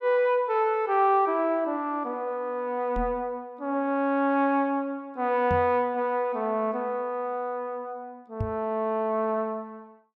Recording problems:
microphone bump; at 3 s, at 5.5 s and at 8.5 s; peak 0 dB vs average level

